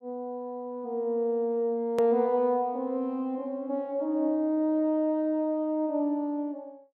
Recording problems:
edit click; at 2 s

